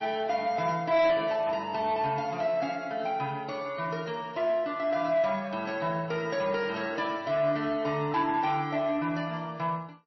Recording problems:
codec artefacts; MP3, log-spectral distance 2 dB, nothing above 5.7 kHz
distorted audio; soft clipping, signal-to-distortion ratio 11 dB

